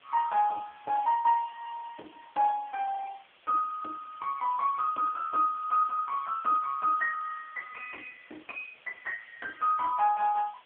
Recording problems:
phone line; 390 Hz to 2.5 kHz, AMR-NB
background hiss; SNR 28 dB

